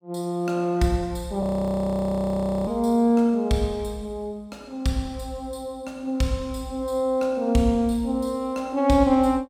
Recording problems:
frozen audio; at 1.5 s for 1 s

